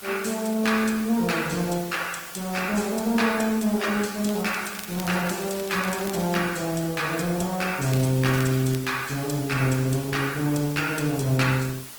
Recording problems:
lossy codec; Opus, log-spectral distance 7 dB
background hiss; slope 0 dB per octave, SNR 13 dB
crackle; from 4.5 to 6.5 s and at 8 s; loose cable, SNR 15 dB

